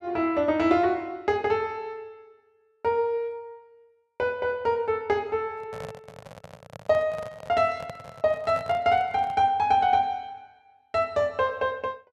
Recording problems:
microphone handling noise; from 5.5 to 9.5 s; peak -9 dB vs average level

